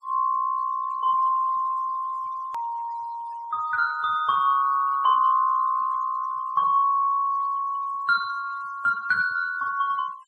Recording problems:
noise reduction artefacts; signal-to-artefact ratio 26 dB
edit click; at 2.5 s

